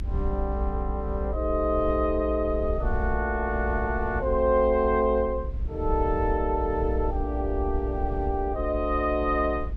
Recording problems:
low-frequency rumble; below 60 Hz, strongest tone 58 Hz, SNR 6 dB

